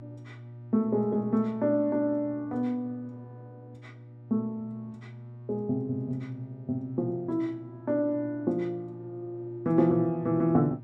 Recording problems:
hum; 60 Hz, harmonics up to 600 Hz, SNR 17 dB

